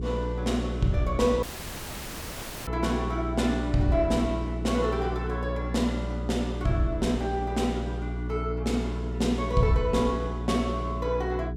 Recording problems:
hum; 60 Hz, harmonics up to 420 Hz, SNR 5 dB
audio cutting out; at 1.5 s for 1 s

